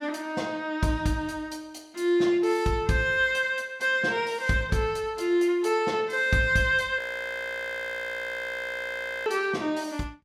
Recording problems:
audio freezing; at 7 s for 2.5 s

